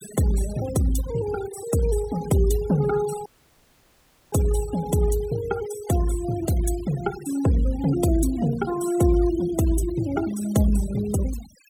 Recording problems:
denoising artefacts; signal-to-artefact ratio 15 dB
audio cutting out; at 3.5 s for 1 s

